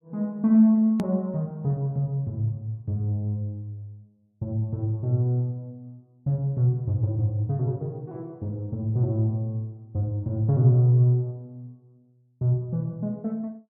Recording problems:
hard cut with a click; at 1 s

